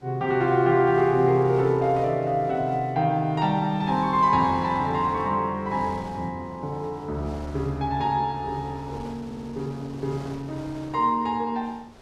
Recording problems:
wind noise; below 1.2 kHz, SNR 22 dB
stutter; at 9.5 s

